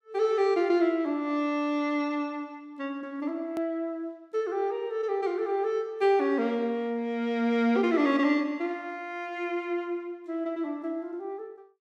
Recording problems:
edit click; at 3.5 s

